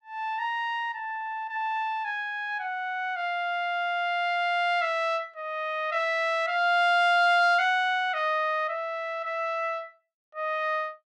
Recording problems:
none

